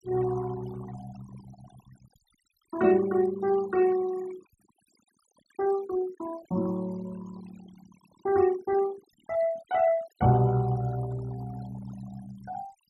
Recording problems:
denoising artefacts; signal-to-artefact ratio 19 dB

